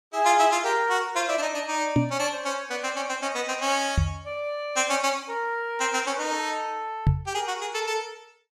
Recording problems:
knock on the microphone; at 2 s, at 4 s and at 7 s; peak +8 dB vs average level

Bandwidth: 14.5 kHz